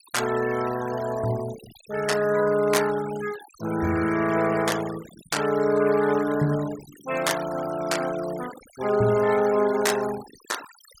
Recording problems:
denoising artefacts; signal-to-artefact ratio 15 dB

